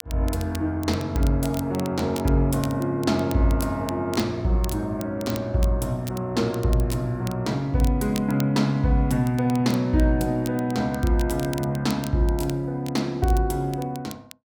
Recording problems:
crackling; vinyl, SNR 18 dB

